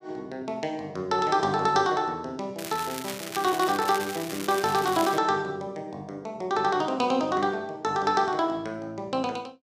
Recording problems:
crackling; from 2.5 to 5 s; loose cable, SNR 10 dB

